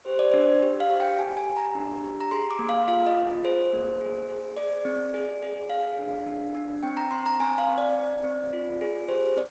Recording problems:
lossy codec; Opus, then G.722, log-spectral distance 3 dB
hiss; SNR 29 dB

